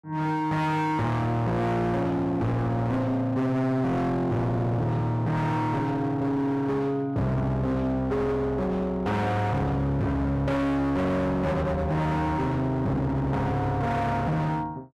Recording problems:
distortion; hard clipping, signal-to-distortion ratio 7 dB

